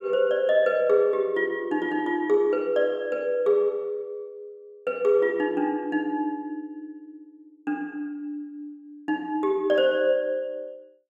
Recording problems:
none

